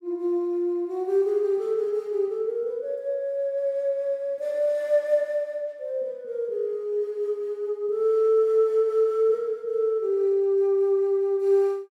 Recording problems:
none

